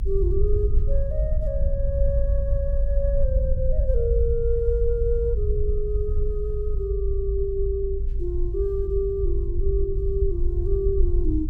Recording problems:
rumble; below 56 Hz, SNR -2 dB

